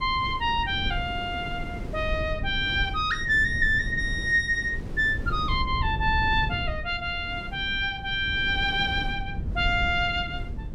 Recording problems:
rumble; below 110 Hz, SNR 10 dB
wind noise; below 370 Hz, SNR 17 dB

